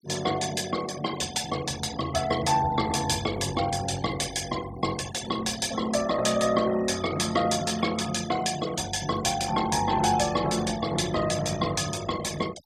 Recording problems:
denoising artefacts; signal-to-artefact ratio 14 dB

